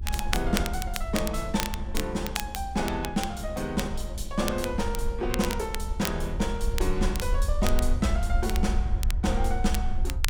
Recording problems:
electrical hum; 50 Hz, harmonics up to 400 Hz, SNR 22 dB
low-frequency rumble; below 66 Hz, SNR 2 dB
crackle; vinyl, SNR 7 dB

